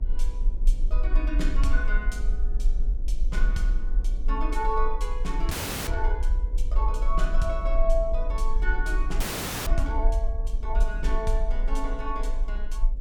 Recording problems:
hum; 50 Hz, harmonics up to 600 Hz, SNR 23 dB
low-frequency rumble; below 40 Hz, strongest tone 20 Hz, SNR -4 dB
wind on the microphone; below 170 Hz, SNR 13 dB
audio freezing; at 5.5 s and at 9 s

